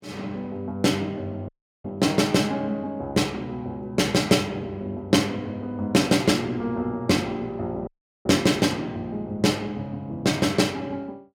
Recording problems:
audio cutting out; at 1.5 s and at 8 s

